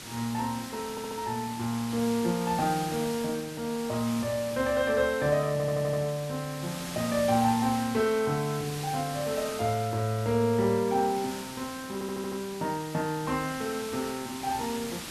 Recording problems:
hiss; slope -1 dB per octave, SNR 11 dB
audio stuttering; at 1 s, at 5.5 s and at 12 s

